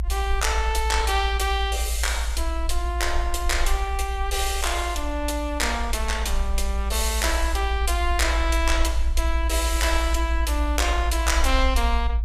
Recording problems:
low-frequency rumble; below 58 Hz, strongest tone 56 Hz, SNR 2 dB

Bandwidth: 15 kHz